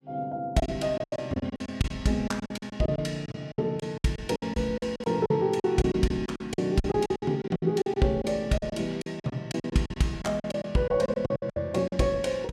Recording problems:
packet loss; 17% of the sound replaced, filled with silence

